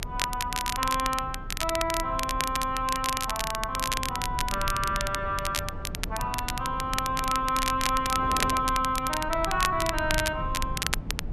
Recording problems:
rumble; below 120 Hz, SNR 10 dB
wind noise; below 620 Hz, SNR 18 dB
crackling; vinyl, SNR 4 dB

